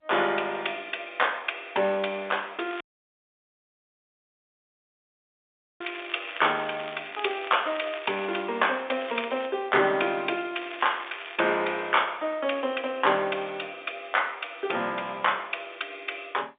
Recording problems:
telephone audio; 300 Hz to 3.6 kHz, G.711
crackle; from 2.5 to 8.5 s, at 9 s and at 11 s; loose cable, SNR 14 dB
audio cutting out; at 3 s for 3 s

